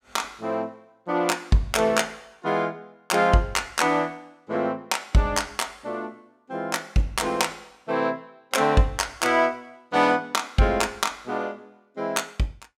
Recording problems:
none

